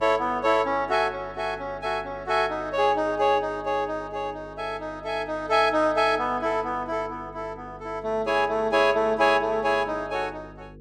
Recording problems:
hum; 50 Hz, harmonics up to 500 Hz, SNR 21 dB

